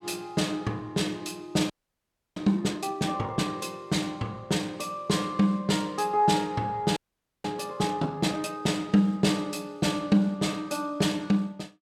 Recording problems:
audio freezing; at 1.5 s for 0.5 s and at 7 s

